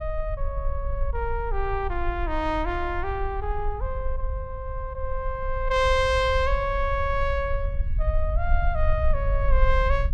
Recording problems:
low-frequency rumble; below 56 Hz, strongest tone 22 Hz, SNR 3 dB

